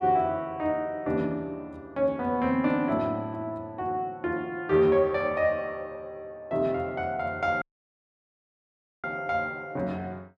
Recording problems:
dropout; at 7.5 s for 1.5 s

